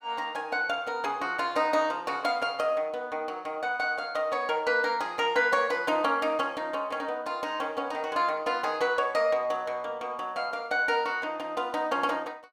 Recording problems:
none

